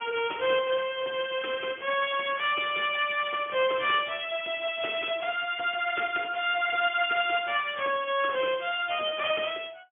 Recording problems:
telephone audio; 300 Hz to 3.4 kHz, Speex

